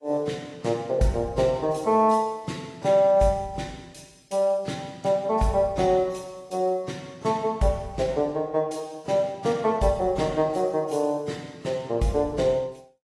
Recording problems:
codec artefacts; AAC, log-spectral distance 3 dB, nothing above 11.3 kHz

